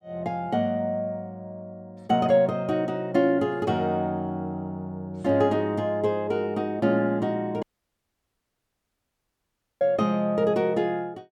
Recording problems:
audio cutting out; at 7.5 s for 2 s

